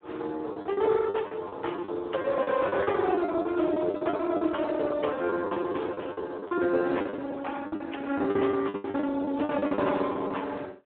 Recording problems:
phone line; 220 Hz to 3.6 kHz, Speex
packet loss; 16% of the sound replaced, filled with the last packet

